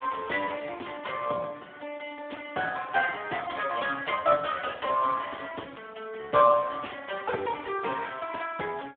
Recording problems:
telephone audio; 240 Hz to 2.9 kHz, Speex

